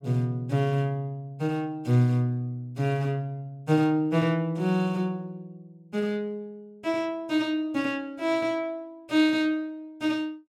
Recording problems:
none

